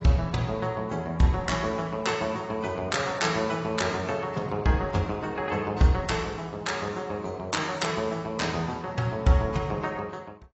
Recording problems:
codec artefacts; AAC, log-spectral distance 3 dB, nothing above 7.8 kHz

